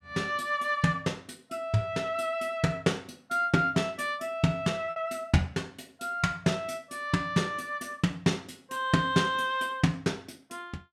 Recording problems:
lost packets; 0.9% of the sound replaced, filled with repeated pitch periods

